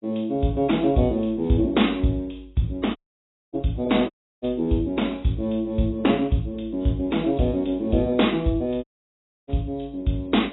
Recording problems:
codec artefacts; AAC, log-spectral distance 4 dB, nothing above 3.8 kHz
audio cutting out; at 3 s for 0.5 s, at 4 s and at 9 s for 0.5 s

